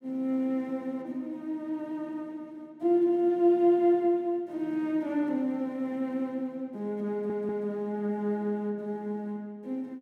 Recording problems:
audio stuttering; at 7 s

